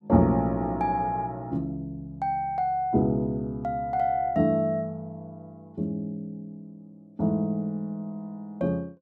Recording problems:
none

